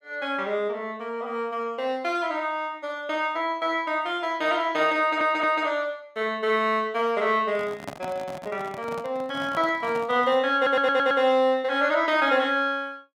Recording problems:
stutter; at 5 s and at 11 s
handling noise; from 7.5 to 10 s; peak -6 dB vs average level

